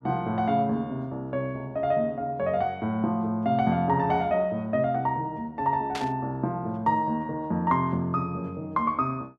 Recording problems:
static burst; at 6 s; peak -4 dB vs average level

